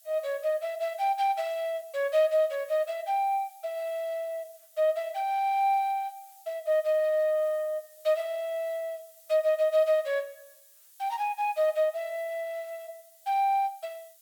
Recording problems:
background hiss; slope +4 dB per octave, SNR 25 dB

